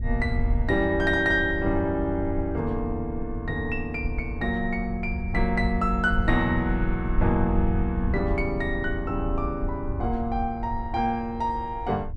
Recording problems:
wind noise; below 76 Hz, SNR 6 dB

